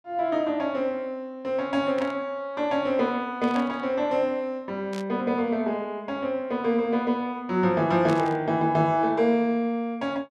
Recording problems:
static burst; 4 times, first at 2 s; peak -8 dB vs average level

